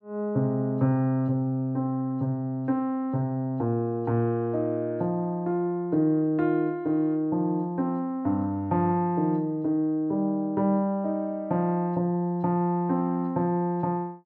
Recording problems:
none

